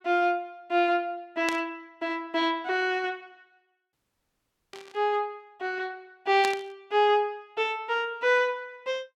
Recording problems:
burst of static; at 1.5 s, at 4.5 s and at 6.5 s; peak 0 dB vs average level
audio cutting out; at 4 s for 1 s

